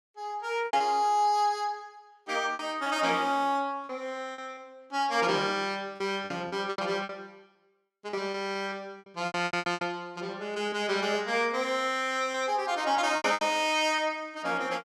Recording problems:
packet loss; 10% of the sound replaced, filled with repeated pitch periods

